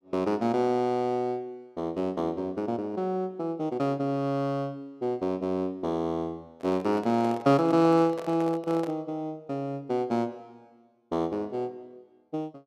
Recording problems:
microphone handling noise; from 6.5 to 9 s; peak -7 dB vs average level

